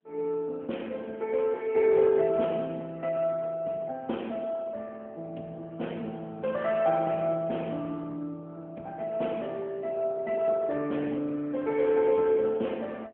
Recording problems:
phone line; 170 Hz to 3.3 kHz, AMR-NB

